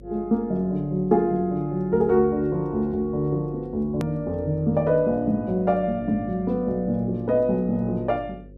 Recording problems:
electrical hum; 50 Hz, harmonics up to 550 Hz, SNR 22 dB
click at an edit; at 4 s

